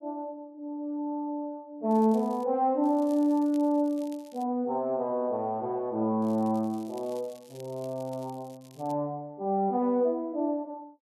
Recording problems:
crackle; at 2 s, from 3 to 4.5 s and from 6 to 9 s; loose cable, SNR 27 dB

